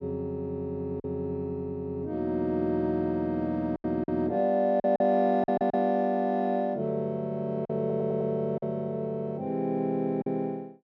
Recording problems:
packet loss; 4% of the sound replaced, filled with silence
stutter; at 5.5 s and at 8 s

